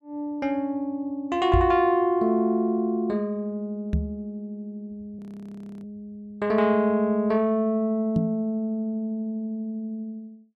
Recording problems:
knock on the microphone; at 1.5 s, at 4 s and at 8 s; peak +5 dB vs average level
audio freezing; at 5 s for 0.5 s

